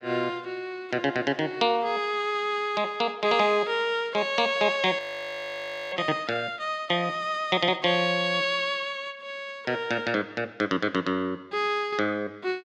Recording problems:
frozen audio; at 5 s for 1 s

